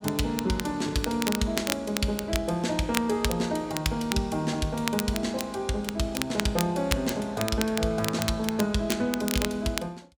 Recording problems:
crackling; vinyl, SNR 7 dB

